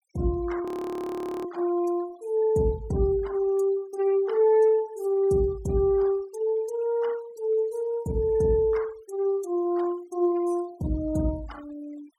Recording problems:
noise reduction artefacts; signal-to-artefact ratio 24 dB
frozen audio; at 0.5 s for 1 s

